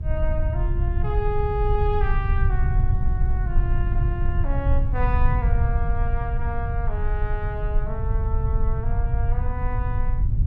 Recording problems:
rumble; below 80 Hz, SNR -7 dB
wind noise; below 220 Hz, SNR 15 dB

